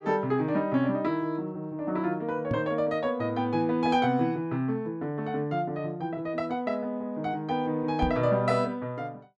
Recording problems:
microphone thump; at 2.5 s and at 8 s; peak +2 dB vs average level

